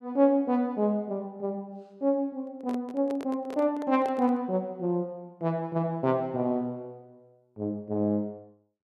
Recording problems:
handling noise; from 2.5 to 4.5 s; peak -6 dB vs average level

